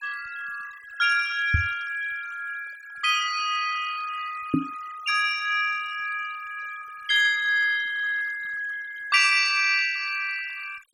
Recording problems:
noise reduction artefacts; signal-to-artefact ratio 16 dB
microphone thump; at 1.5 s and at 4.5 s; peak +5 dB vs average level

